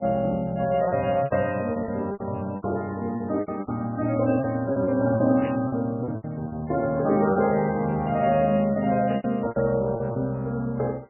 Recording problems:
codec artefacts; MP3, log-spectral distance 2 dB, nothing above 2.5 kHz
lost packets; 12% of the sound replaced, filled with repeated pitch periods
burst of static; at 5.5 s and at 9 s; peak -11 dB vs average level

